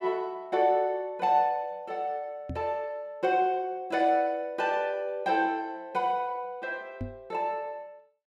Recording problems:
microphone thump; at 2.5 s and at 7 s; peak -3 dB vs average level

